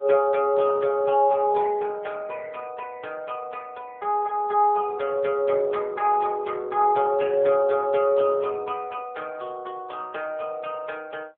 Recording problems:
telephone audio; 320 Hz to 3.4 kHz, AMR-NB

